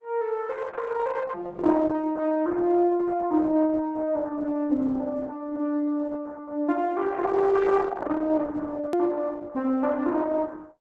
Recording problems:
lossy codec; Opus, log-spectral distance 3 dB, nothing above 13.1 kHz
hard cut with a click; at 9 s

